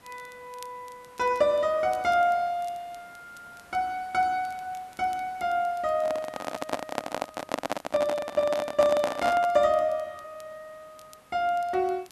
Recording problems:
hiss; slope -4 dB per octave, SNR 28 dB
crackle; vinyl, SNR 30 dB
handling noise; from 6 to 9.5 s; peak +2 dB vs average level

